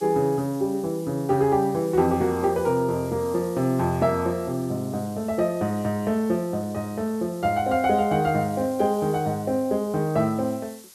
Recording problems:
background hiss; slope +2 dB per octave, SNR 22 dB

